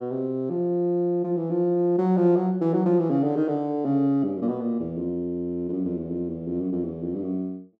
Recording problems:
none

